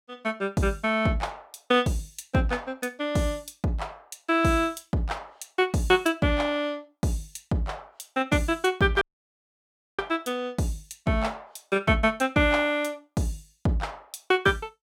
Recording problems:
dropout; at 9 s for 1 s

